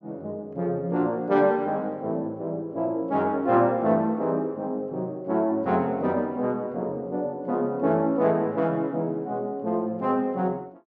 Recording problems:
none

